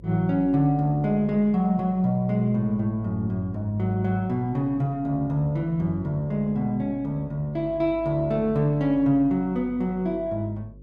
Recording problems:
hum; 50 Hz, harmonics up to 550 Hz, SNR 22 dB

